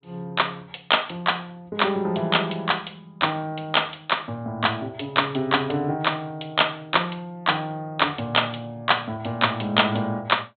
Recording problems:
low-pass filter; nothing above 4 kHz

